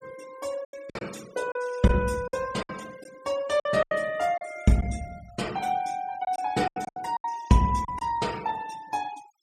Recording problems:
noise reduction artefacts; signal-to-artefact ratio 19 dB
packet loss; 9% of the sound replaced, filled with silence

